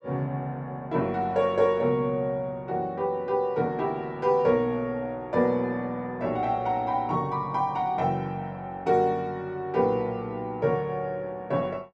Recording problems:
none

